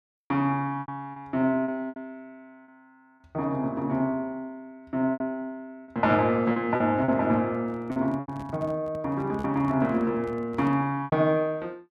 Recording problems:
packet loss; 7% of the sound replaced, filled with repeated pitch periods
handling noise; from 7.5 to 11 s; peak -10 dB vs average level

